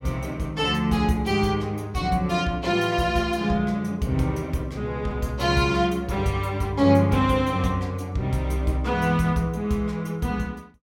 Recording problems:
none

